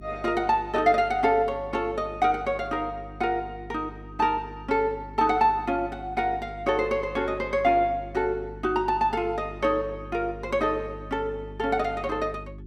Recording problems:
hum; 50 Hz, harmonics up to 400 Hz, SNR 17 dB

